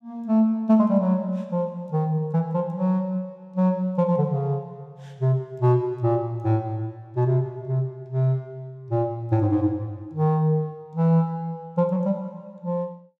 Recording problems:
none

